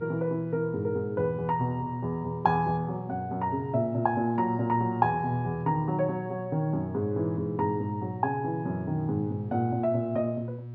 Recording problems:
hum; 60 Hz, harmonics up to 600 Hz, SNR 12 dB

